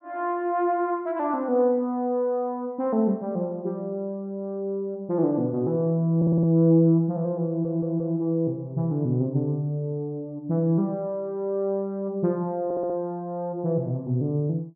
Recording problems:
stutter; at 6 s, at 7.5 s and at 13 s

